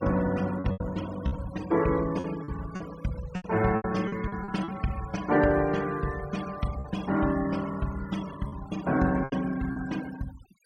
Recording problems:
denoising artefacts; signal-to-artefact ratio 15 dB
packet loss; 8% of the sound replaced, filled with repeated pitch periods

